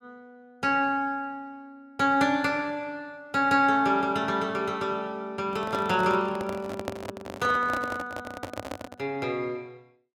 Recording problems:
microphone handling noise; from 5.5 to 9 s; peak -2 dB vs average level

